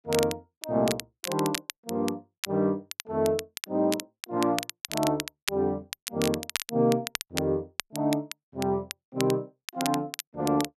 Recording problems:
crackle; vinyl, SNR 7 dB

